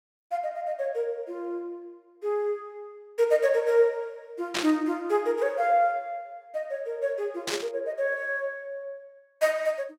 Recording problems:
burst of static; at 4.5 s and at 7.5 s; peak +3 dB vs average level

